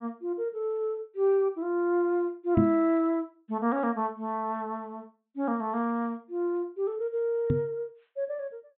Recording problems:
treble cut off; nothing above 4 kHz
knock on the microphone; at 2.5 s and at 7.5 s; peak +7 dB vs average level

